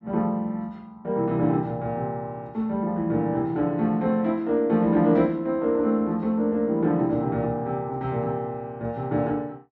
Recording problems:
treble cut off; nothing above 8 kHz

